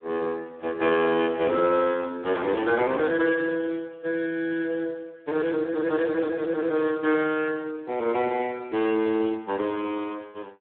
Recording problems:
phone line; 260 Hz to 3.4 kHz, Speex

